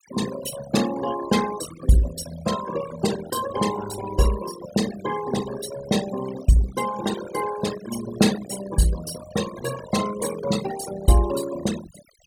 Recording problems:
noise reduction artefacts; signal-to-artefact ratio 11 dB

